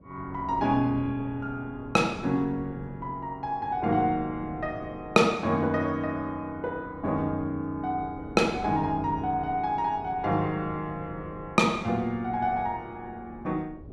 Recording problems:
wind on the microphone; below 360 Hz, SNR 17 dB

